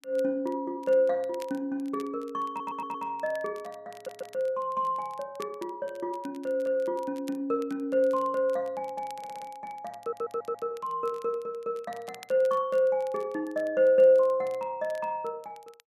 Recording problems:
crackling; vinyl, SNR 27 dB
stutter; 4 times, first at 2.5 s

